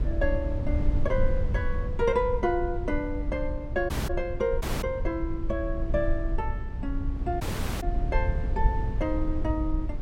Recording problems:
rumble; below 72 Hz, SNR 1 dB
audio cutting out; at 4 s, at 4.5 s and at 7.5 s

